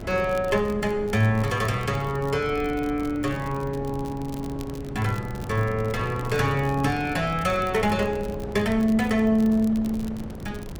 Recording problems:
wind noise; below 320 Hz, SNR 12 dB
crackling; vinyl, SNR 24 dB

